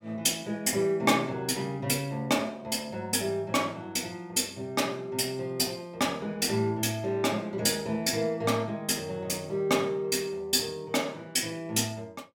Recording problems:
none

